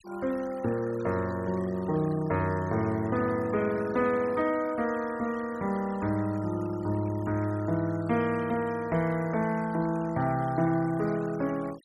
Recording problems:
noise reduction artefacts; signal-to-artefact ratio 20 dB

